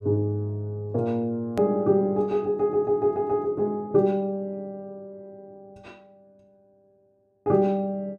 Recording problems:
edit click; at 1.5 s

